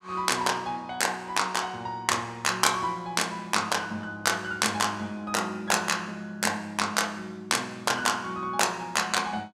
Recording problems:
none

